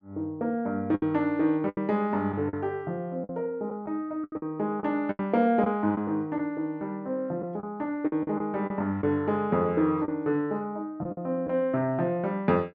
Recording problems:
packet loss; 7% of the sound replaced, filled with the last packet

